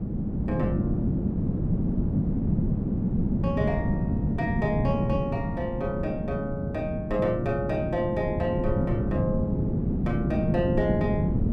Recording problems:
wind on the microphone; below 230 Hz, SNR -3 dB

